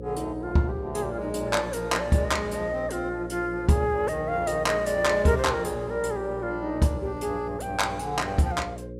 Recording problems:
hum; 60 Hz, harmonics up to 540 Hz, SNR 12 dB

